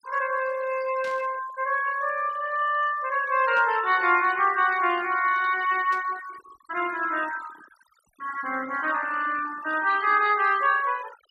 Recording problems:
denoising artefacts; signal-to-artefact ratio 18 dB
static burst; at 1 s, at 3.5 s and at 6 s; peak -15 dB vs average level

